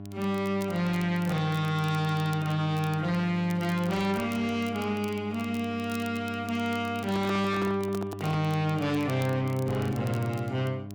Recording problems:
distortion; soft clipping, signal-to-distortion ratio 7 dB
electrical hum; 50 Hz, harmonics up to 1.1 kHz, SNR 12 dB
crackle; vinyl, SNR 21 dB
microphone handling noise; from 7 to 8.5 s; peak -1 dB vs average level

